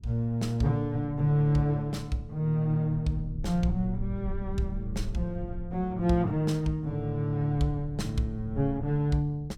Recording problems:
rumble; below 74 Hz, SNR 13 dB

